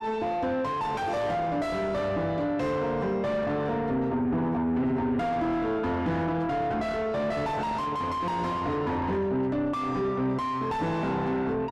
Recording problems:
distorted audio; soft clipping, signal-to-distortion ratio 6 dB

